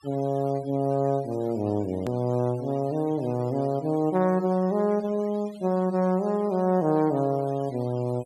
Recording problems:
denoising artefacts; signal-to-artefact ratio 24 dB
edit click; at 2 s

